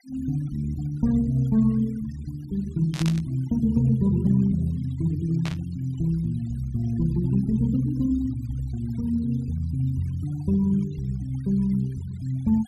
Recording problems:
denoising artefacts; signal-to-artefact ratio 25 dB
static burst; at 3 s and at 5.5 s; peak -6 dB vs average level

